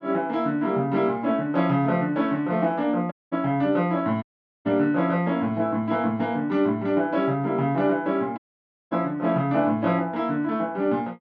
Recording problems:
dropout; at 3 s, at 4 s and at 8.5 s for 0.5 s

